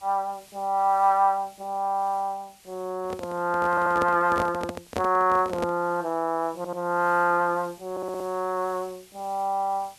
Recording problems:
background hiss; slope +1 dB per octave, SNR 26 dB
microphone handling noise; from 3 to 6 s; peak 0 dB vs average level
audio stuttering; at 3.5 s, at 6.5 s and at 8 s

